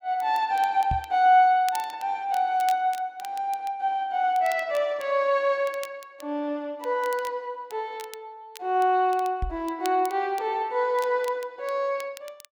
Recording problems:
crackle; vinyl, SNR 22 dB
microphone bump; at 1 s and at 9.5 s; peak -2 dB vs average level

